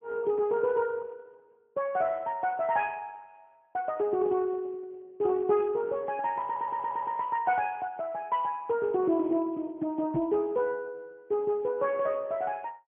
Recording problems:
treble missing; nothing above 3.2 kHz
lossy codec; Speex, log-spectral distance 2 dB
audio stuttering; at 6.5 s
microphone bump; at 10 s; peak -3 dB vs average level

